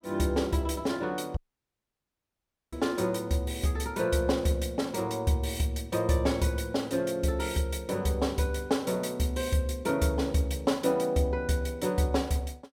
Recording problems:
audio cutting out; at 1.5 s for 1.5 s

